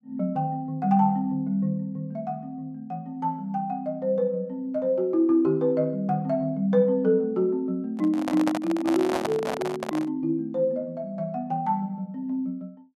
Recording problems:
microphone handling noise; from 8 to 10 s; peak +1 dB vs average level

